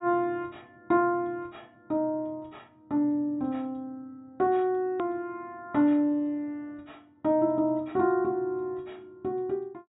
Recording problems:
low-pass filter; nothing above 4 kHz
edit click; at 5 s

